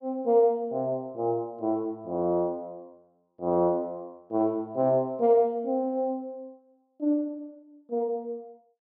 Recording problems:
none

